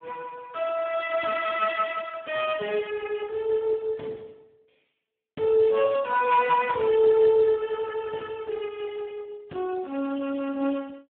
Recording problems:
telephone audio; 170 Hz to 2.6 kHz, Speex

